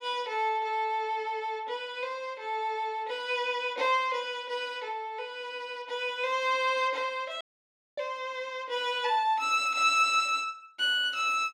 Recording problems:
dropout; at 7.5 s for 0.5 s

